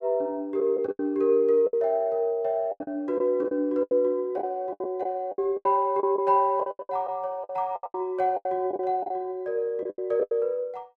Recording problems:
lost packets; 14% of the sound replaced, filled with the last packet

